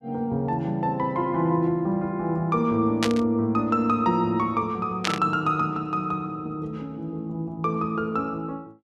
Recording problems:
burst of static; at 3 s and at 5 s; peak +4 dB vs average level

